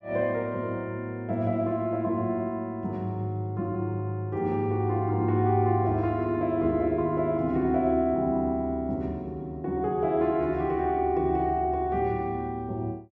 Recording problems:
none

